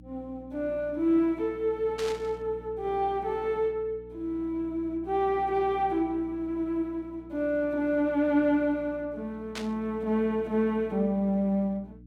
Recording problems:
electrical hum; 60 Hz, harmonics up to 300 Hz, SNR 21 dB
static burst; at 2 s and at 9.5 s; peak -4 dB vs average level

